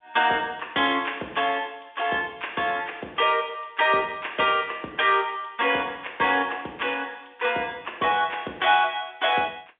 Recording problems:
phone line; 170 Hz to 3.6 kHz, G.711

